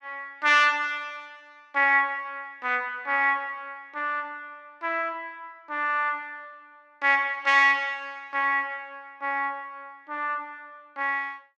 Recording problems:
none

